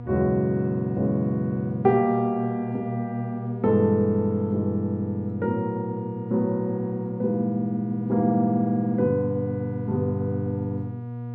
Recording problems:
hum; 60 Hz, harmonics up to 960 Hz, SNR 9 dB

